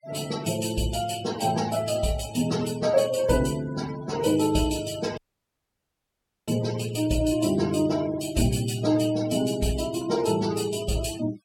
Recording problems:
noise reduction artefacts; signal-to-artefact ratio 15 dB
audio cutting out; at 5 s for 1.5 s

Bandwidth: 17.5 kHz